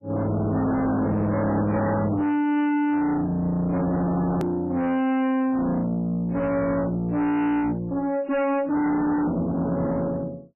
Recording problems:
lossy codec; MP3, log-spectral distance 2 dB, nothing above 13.1 kHz
distortion; soft clipping, signal-to-distortion ratio 6 dB
edit click; at 4.5 s

